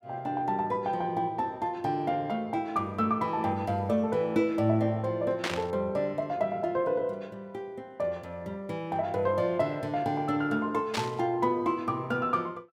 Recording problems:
static burst; at 5.5 s and at 11 s; peak +2 dB vs average level

